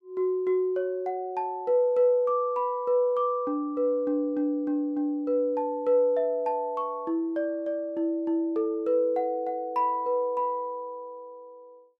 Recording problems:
none

